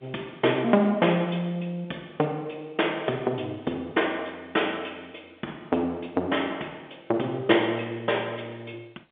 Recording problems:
phone line; 240 Hz to 3.6 kHz, G.711

